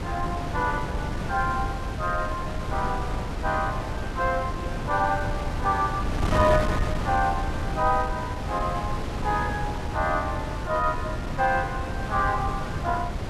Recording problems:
wind on the microphone; below 390 Hz, SNR 3 dB

